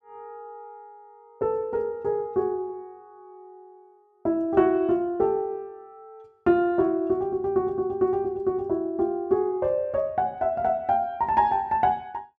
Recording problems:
none

